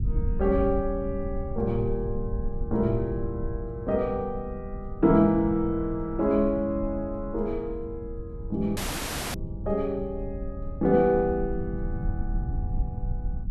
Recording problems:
low-frequency rumble; below 92 Hz, SNR 8 dB
dropout; at 9 s for 0.5 s

